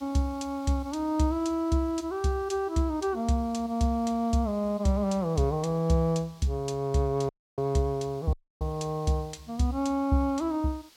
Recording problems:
background hiss; slope +1 dB per octave, SNR 27 dB
dropout; at 7.5 s and at 8.5 s

